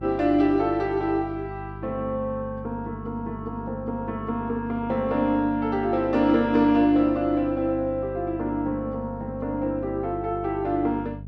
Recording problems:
hum; 50 Hz, harmonics up to 450 Hz, SNR 14 dB

